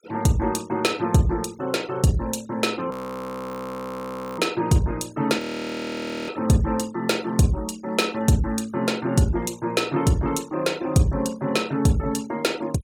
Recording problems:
noise reduction artefacts; signal-to-artefact ratio 22 dB
audio freezing; at 3 s for 1.5 s and at 5.5 s for 1 s

